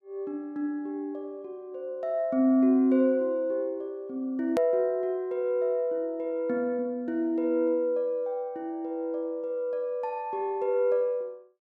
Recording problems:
edit click; at 4.5 s

